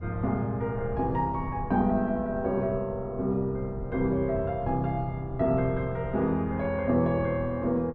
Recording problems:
wind noise; below 130 Hz, SNR 13 dB

